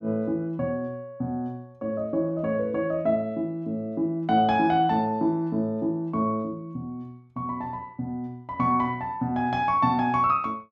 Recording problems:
none

